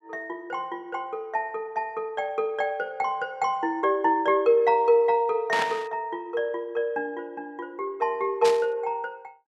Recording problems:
burst of static; at 5.5 s and at 8.5 s; peak +1 dB vs average level

